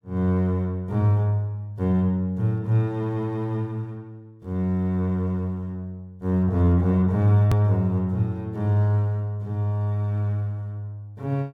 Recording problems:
click at an edit; at 7.5 s

